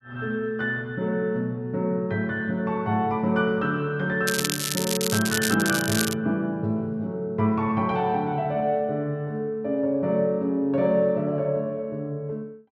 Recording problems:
crackling; from 4.5 to 6 s; loose cable, SNR 2 dB

